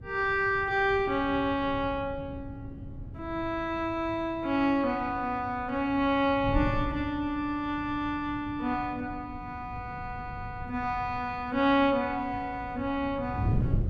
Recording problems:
wind on the microphone; below 150 Hz, SNR 11 dB

